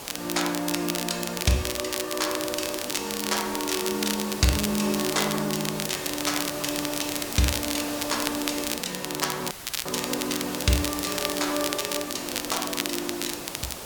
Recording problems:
hiss; SNR 6 dB
crackling; vinyl, SNR 3 dB
audio cutting out; at 9.5 s; filled with static

